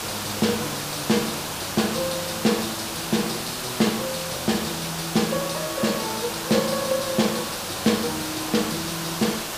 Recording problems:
hiss; slope -2 dB per octave, SNR 3 dB

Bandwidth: 15 kHz